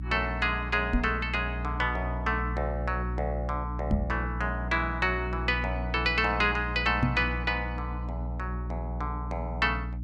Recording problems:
electrical hum; 60 Hz, harmonics up to 300 Hz, SNR 5 dB
microphone thump; at 1 s, at 4 s and at 7 s; peak +6 dB vs average level

